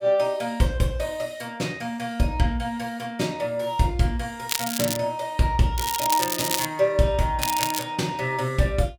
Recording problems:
crackling; at 4.5 s, at 6 s and at 7.5 s; loose cable, SNR 2 dB

